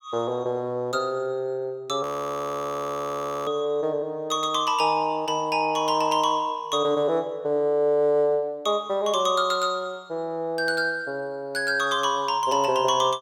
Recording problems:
audio freezing; at 2 s for 1.5 s

